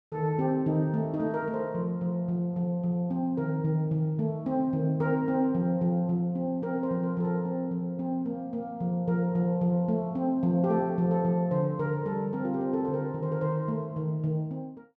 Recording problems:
none

